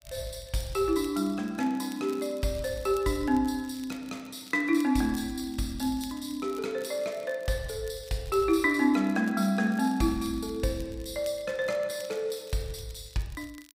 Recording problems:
crackle; vinyl, SNR 23 dB

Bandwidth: 15.5 kHz